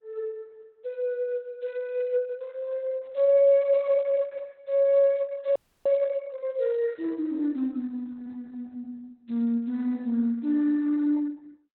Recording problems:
codec artefacts; Opus, log-spectral distance 2 dB, nothing above 4.1 kHz
audio freezing; at 5.5 s

